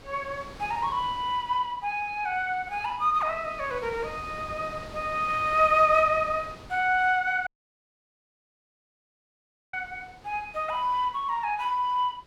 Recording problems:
wind on the microphone; below 1.7 kHz, SNR 19 dB
dropout; at 7.5 s for 2.5 s

